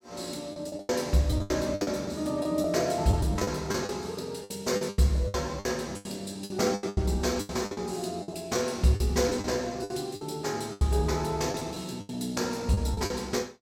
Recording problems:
lost packets; 14% of the sound replaced, filled with the last packet

